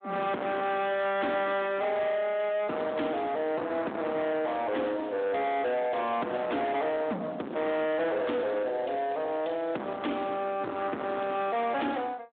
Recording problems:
phone line; 240 Hz to 3.6 kHz, Speex
distorted audio; soft clipping, signal-to-distortion ratio 6 dB

